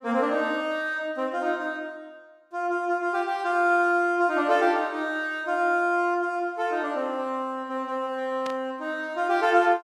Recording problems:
static burst; at 8.5 s; peak -9 dB vs average level

